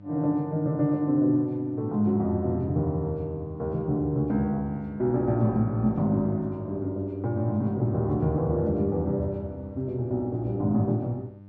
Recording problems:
hum; 50 Hz, harmonics up to 900 Hz, SNR 20 dB

